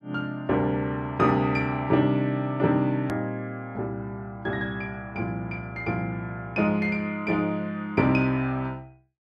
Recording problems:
edit click; at 3 s

